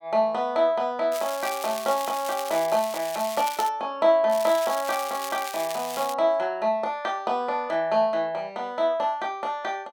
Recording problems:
crackle; from 1 to 3.5 s and from 4.5 to 6 s; loose cable, SNR 11 dB

